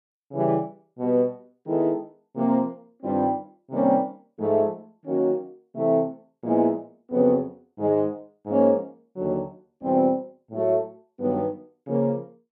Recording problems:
none

